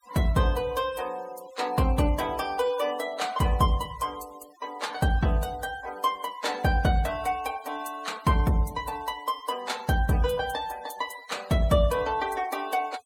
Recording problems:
denoising artefacts; signal-to-artefact ratio 20 dB

